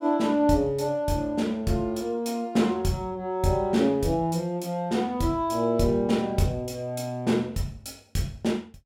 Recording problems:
none

